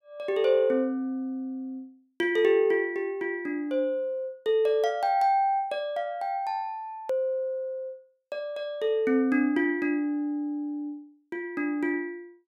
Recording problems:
edit click; at 7 s

